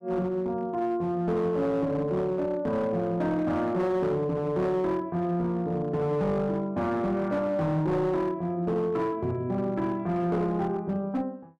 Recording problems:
distortion; hard clipping, uneven, signal-to-distortion ratio 11 dB

